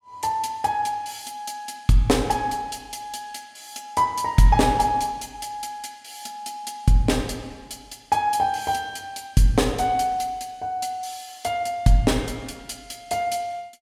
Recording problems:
none

